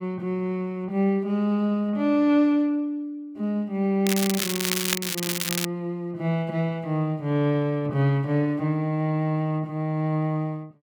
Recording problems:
crackling; from 4 to 5.5 s; loose cable, SNR 2 dB

